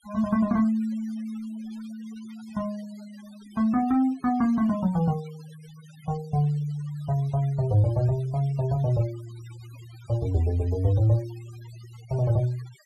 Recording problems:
denoising artefacts; signal-to-artefact ratio 24 dB

